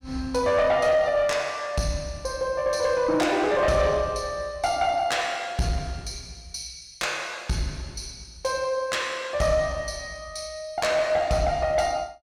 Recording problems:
distortion; soft clipping, signal-to-distortion ratio 11 dB

